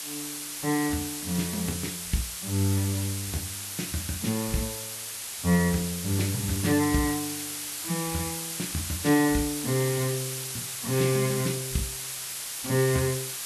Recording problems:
lossy codec; Vorbis, log-spectral distance 17 dB, nothing above 12.3 kHz
hiss; slope +2 dB per octave, SNR 4 dB

